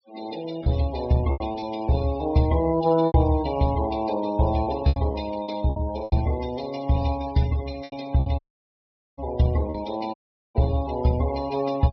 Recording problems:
treble cut off; nothing above 5.5 kHz
noise reduction artefacts; signal-to-artefact ratio 19 dB
packet loss; 7% of the sound replaced, filled with repeated pitch periods
audio cutting out; at 8.5 s for 1 s and at 10 s

